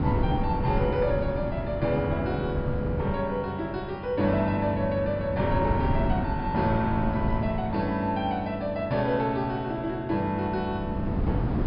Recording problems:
treble missing; nothing above 5.5 kHz
wind on the microphone; below 230 Hz, SNR 4 dB

